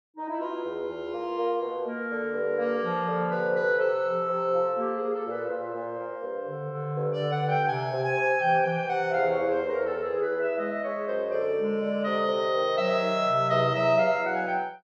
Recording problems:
none

